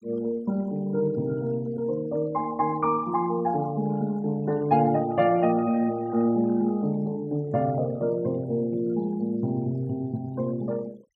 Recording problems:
noise reduction artefacts; signal-to-artefact ratio 26 dB

